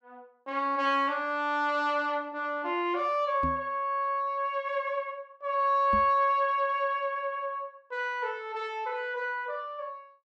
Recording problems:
knock on the microphone; at 3.5 s and at 6 s; peak -2 dB vs average level

